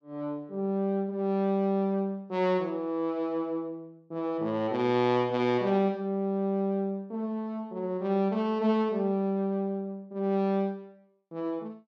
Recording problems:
none

